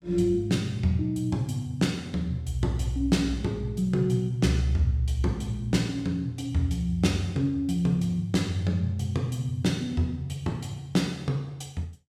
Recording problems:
none

